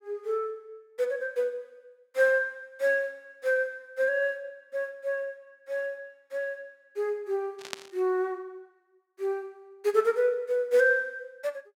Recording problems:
static burst; at 7.5 s; peak -1 dB vs average level

